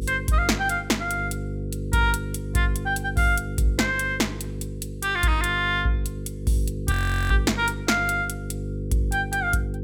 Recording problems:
electrical hum; 50 Hz, harmonics up to 500 Hz, SNR 8 dB
audio freezing; at 7 s

